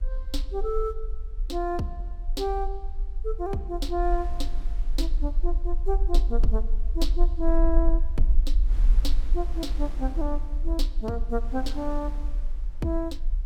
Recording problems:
low-frequency rumble; below 42 Hz, strongest tone 18 Hz, SNR -2 dB
wind noise; below 580 Hz, SNR 18 dB

